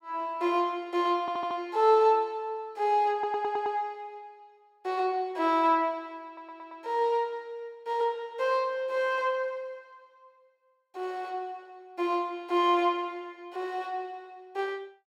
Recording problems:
audio stuttering; at 1 s, at 3 s and at 6.5 s

